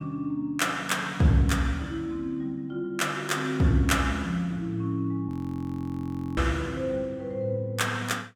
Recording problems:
frozen audio; at 5.5 s for 1 s

